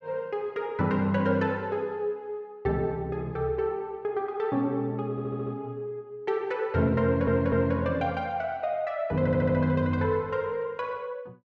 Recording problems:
audio stuttering; at 5 s, at 7 s and at 9 s

